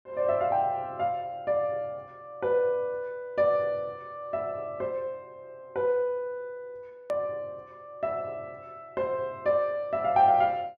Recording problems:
hard cut with a click; at 7 s

